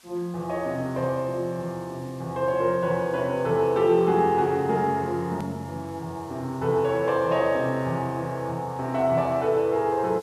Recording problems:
hiss; slope +1 dB per octave, SNR 27 dB
click at an edit; at 5.5 s

